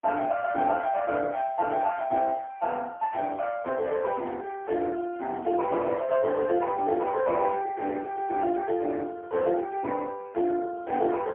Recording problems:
phone line; 170 Hz to 2 kHz, AMR-NB, then MP3
microphone handling noise; from 3.5 to 6.5 s; peak -15 dB vs average level

